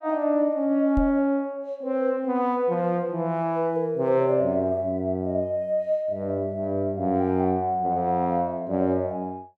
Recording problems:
microphone thump; at 1 s; peak 0 dB vs average level

